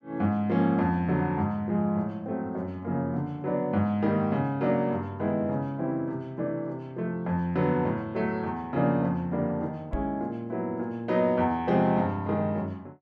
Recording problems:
microphone thump; at 10 s; peak -1 dB vs average level

